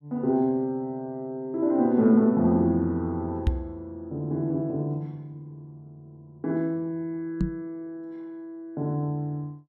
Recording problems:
microphone thump; at 3.5 s and at 7.5 s; peak +6 dB vs average level

